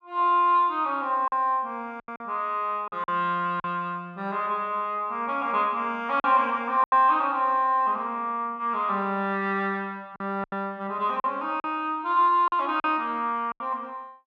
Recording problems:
lost packets; 5% of the sound replaced, filled with silence

